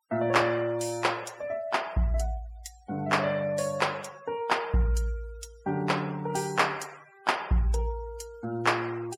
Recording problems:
noise reduction artefacts; signal-to-artefact ratio 21 dB

